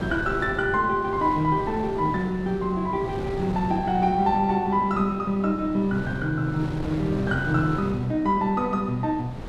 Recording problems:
wind on the microphone; below 450 Hz, SNR 11 dB

